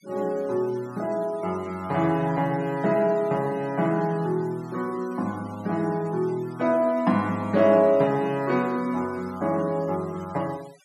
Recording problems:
noise reduction artefacts; signal-to-artefact ratio 24 dB

